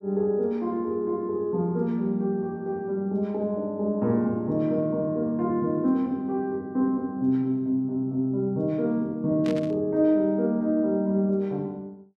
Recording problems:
static burst; at 9.5 s; peak -11 dB vs average level

